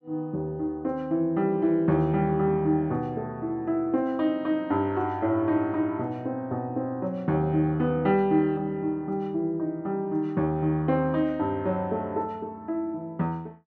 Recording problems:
none

